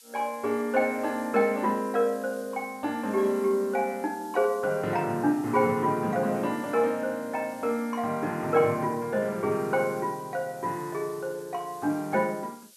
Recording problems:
background hiss; slope +6 dB per octave, SNR 23 dB

